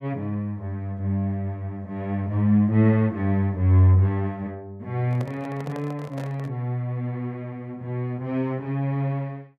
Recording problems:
microphone handling noise; from 5 to 6.5 s; peak -8 dB vs average level

